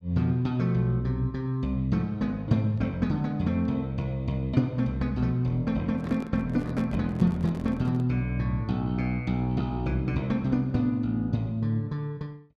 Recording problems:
handling noise; from 6 to 8 s; peak -8 dB vs average level

